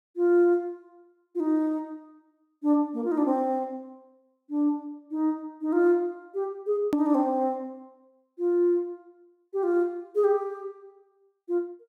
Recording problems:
hard cut with a click; at 7 s

